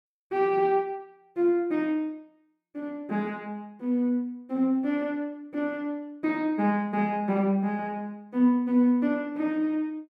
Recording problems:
none

